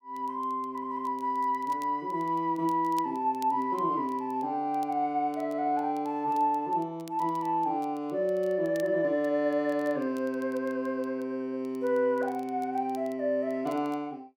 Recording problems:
crackle; vinyl, SNR 28 dB

